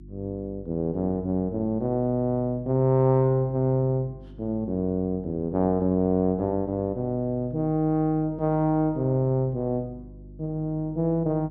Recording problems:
electrical hum; 50 Hz, harmonics up to 350 Hz, SNR 20 dB

